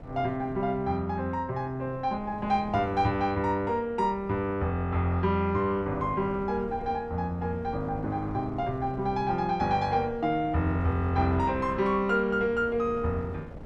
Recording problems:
wind on the microphone; below 420 Hz, SNR 16 dB

